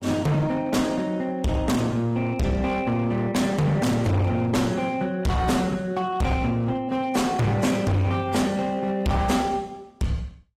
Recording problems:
lossy compression; AAC, log-spectral distance 2 dB
distorted audio; hard clipping, uneven, signal-to-distortion ratio 6 dB

